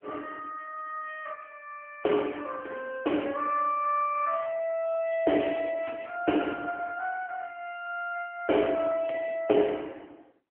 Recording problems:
phone line; 240 Hz to 3.2 kHz, AMR-NB

